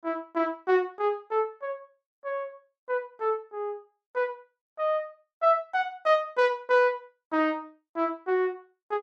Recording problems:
none

